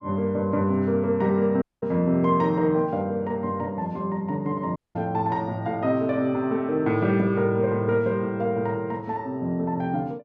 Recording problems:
audio cutting out; at 1.5 s and at 5 s

